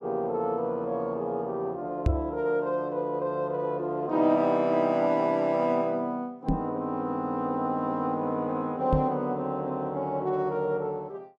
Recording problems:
microphone thump; at 2 s, at 6.5 s and at 9 s; peak +7 dB vs average level

